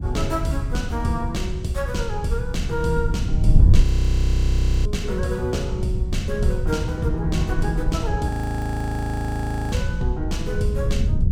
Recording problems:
rumble; below 110 Hz, SNR 4 dB
wind noise; below 86 Hz, SNR -1 dB
frozen audio; at 4 s for 1 s and at 8.5 s for 1.5 s

